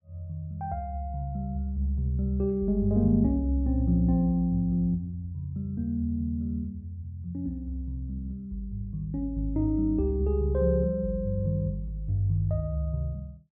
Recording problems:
none

